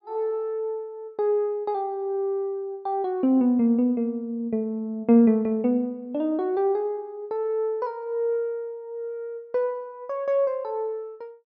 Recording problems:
none

